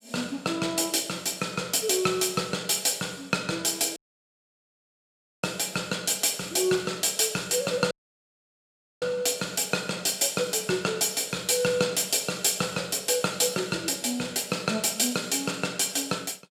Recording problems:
dropout; at 4 s for 1.5 s and at 8 s for 1 s

